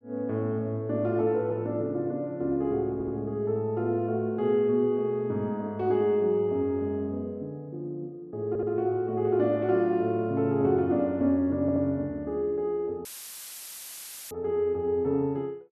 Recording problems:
audio stuttering; at 3 s, at 8.5 s and at 12 s
audio cutting out; at 13 s for 1.5 s; filled with static

